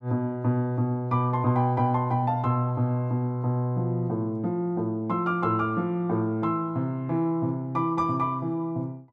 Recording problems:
none

